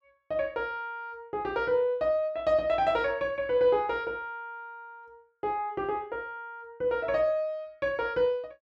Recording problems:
none

